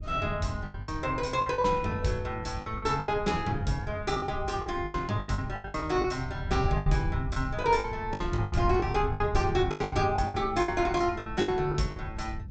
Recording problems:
treble missing; nothing above 8 kHz
wind noise; below 100 Hz, SNR 8 dB
lost packets; 15% of the sound replaced, filled with the last packet

